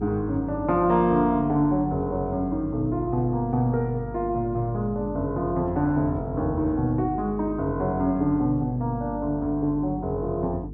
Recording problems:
electrical hum; 50 Hz, harmonics up to 450 Hz, SNR 13 dB

